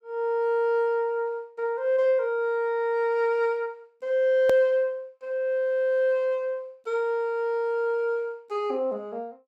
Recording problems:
click at an edit; at 4.5 s

